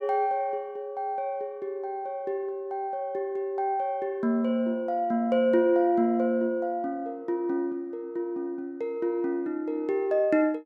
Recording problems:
none

